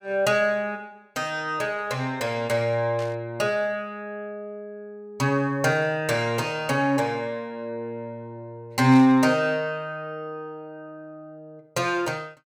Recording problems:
burst of static; at 3 s and at 9 s; peak -12 dB vs average level

